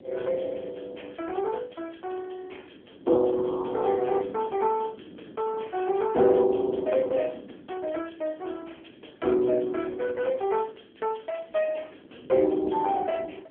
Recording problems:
telephone audio; 260 Hz to 3.2 kHz, AMR-NB
wind on the microphone; below 400 Hz, SNR 19 dB

